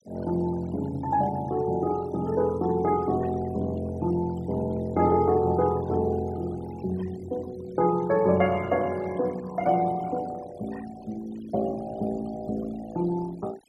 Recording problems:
noise reduction artefacts; signal-to-artefact ratio 20 dB

